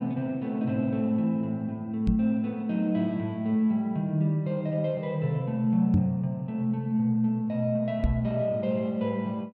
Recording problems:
microphone thump; at 2 s, at 6 s and at 8 s; peak +6 dB vs average level

